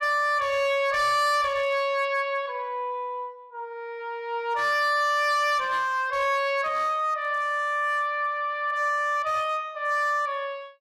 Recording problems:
distorted audio; hard clipping, signal-to-distortion ratio 11 dB

